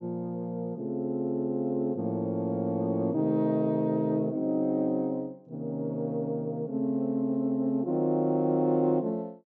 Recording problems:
low-pass filter; nothing above 8 kHz

